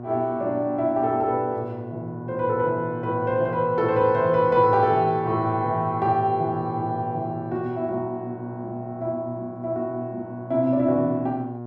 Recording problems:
hum; 60 Hz, harmonics up to 1.1 kHz, SNR 12 dB

